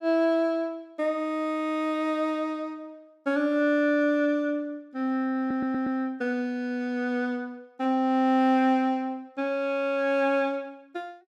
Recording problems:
stutter; at 5.5 s

